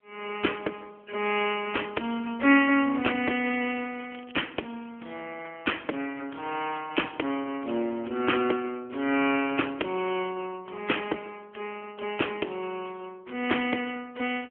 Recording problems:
telephone audio; 260 Hz to 3.3 kHz, AMR-NB
crackle; at 3.5 s and at 9 s; loose cable, SNR 24 dB

